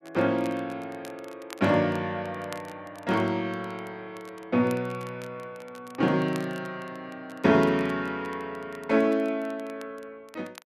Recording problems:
crackle; vinyl, SNR 24 dB

